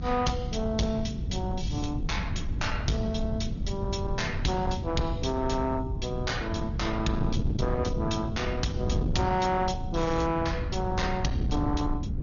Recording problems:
low-pass filter; nothing above 6.7 kHz
lossy codec; MP3, log-spectral distance 2 dB
distortion; soft clipping, signal-to-distortion ratio 11 dB
rumble; below 94 Hz, SNR 7 dB
wind noise; below 180 Hz, SNR 4 dB

